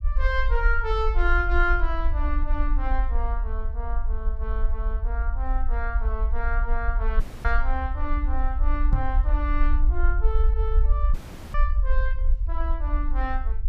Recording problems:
rumble; below 52 Hz, SNR -4 dB
audio cutting out; at 7 s and at 11 s
microphone thump; at 9 s; peak +9 dB vs average level

